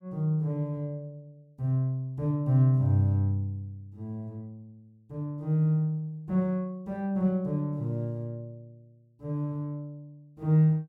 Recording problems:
none

